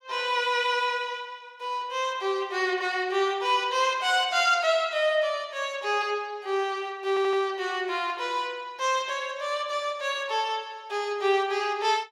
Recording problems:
audio stuttering; at 7 s

